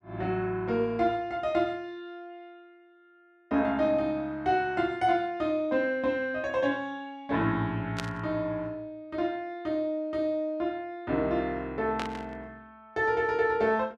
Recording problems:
static burst; at 8 s and at 12 s; peak -2 dB vs average level

